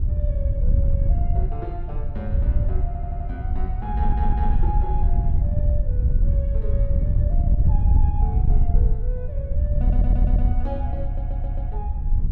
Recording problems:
wind on the microphone; below 76 Hz, SNR -13 dB
audio stuttering; 4 times, first at 3 s

